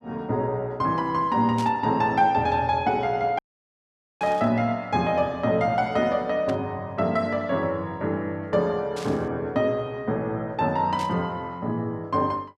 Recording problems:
burst of static; 5 times, first at 1.5 s; peak -9 dB vs average level
audio cutting out; at 3.5 s for 1 s

